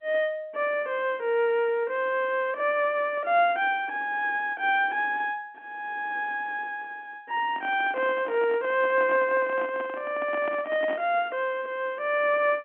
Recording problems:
telephone audio; 220 Hz to 3.3 kHz, G.711
microphone handling noise; from 7.5 to 11 s; peak -6 dB vs average level

